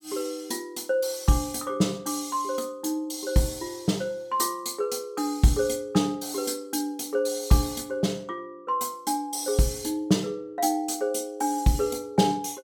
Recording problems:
none

